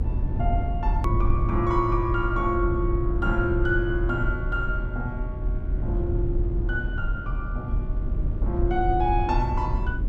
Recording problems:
electrical hum; 60 Hz, harmonics up to 2.1 kHz, SNR 23 dB
rumble; below 82 Hz, SNR 0 dB
click at an edit; at 1 s

